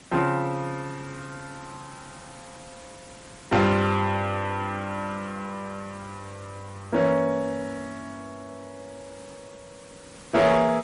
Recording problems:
lossy compression; MP3, log-spectral distance 10 dB
distorted audio; hard clipping, signal-to-distortion ratio 11 dB
hiss; slope -2 dB per octave, SNR 21 dB

